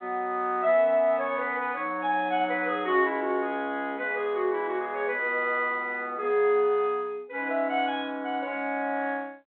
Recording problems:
telephone audio; 220 Hz to 3.7 kHz, G.726

